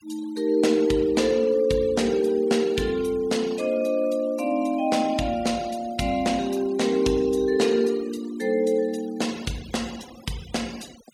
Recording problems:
noise reduction artefacts; signal-to-artefact ratio 20 dB

